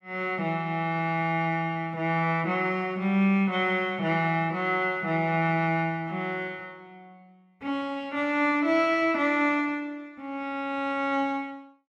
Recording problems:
none

